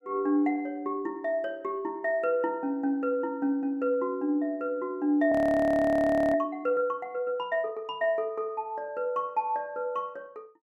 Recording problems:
audio freezing; at 5.5 s for 1 s

